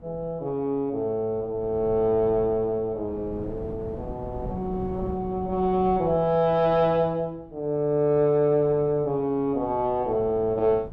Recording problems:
wind noise; below 250 Hz, SNR 17 dB

